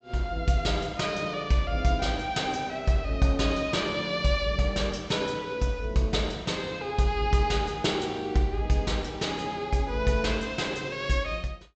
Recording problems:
treble cut off; nothing above 8 kHz

